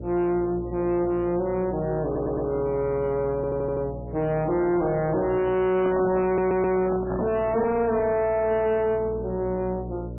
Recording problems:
lossy codec; MP3, log-spectral distance 2 dB, nothing above 2.4 kHz
distortion; soft clipping, signal-to-distortion ratio 6 dB
hum; 60 Hz, harmonics up to 600 Hz, SNR 13 dB
audio stuttering; at 2 s, at 3.5 s and at 6.5 s
microphone handling noise; from 6 to 7.5 s; peak -2 dB vs average level

